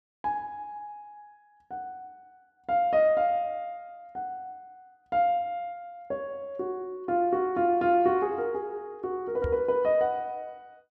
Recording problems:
microphone thump; at 9.5 s; peak -2 dB vs average level

